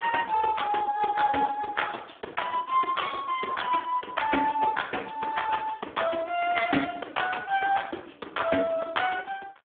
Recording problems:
telephone audio; 240 Hz to 3.6 kHz, Speex

